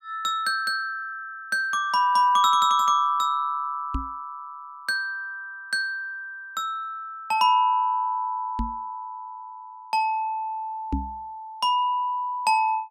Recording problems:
microphone thump; at 4 s, at 8.5 s and at 11 s; peak +1 dB vs average level

